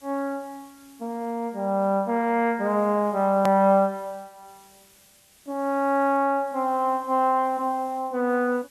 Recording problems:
background hiss; slope 0 dB per octave, SNR 30 dB
edit click; at 3.5 s

